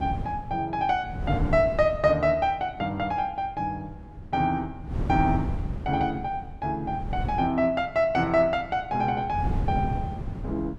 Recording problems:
wind on the microphone; below 170 Hz, SNR 8 dB

